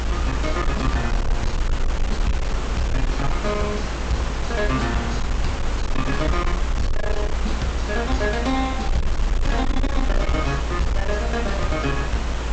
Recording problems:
treble cut off; nothing above 8 kHz
distortion; hard clipping, signal-to-distortion ratio 11 dB
hum; 50 Hz, harmonics up to 550 Hz, SNR 14 dB
hiss; slope -4 dB per octave, SNR 4 dB
low-frequency rumble; below 58 Hz, SNR 1 dB

